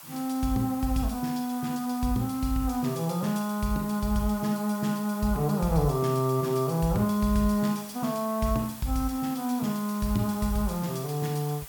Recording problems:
background hiss; SNR 15 dB

